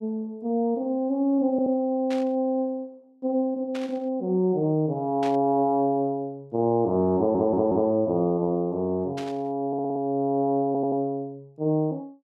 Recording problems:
audio stuttering; 4 times, first at 1.5 s
static burst; 4 times, first at 2 s; peak -10 dB vs average level

